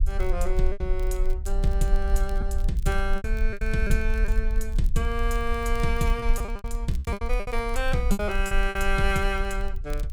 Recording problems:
low-frequency rumble; below 44 Hz, strongest tone 24 Hz, SNR 0 dB
crackling; vinyl, SNR 25 dB
lost packets; 9% of the sound replaced, filled with repeated pitch periods

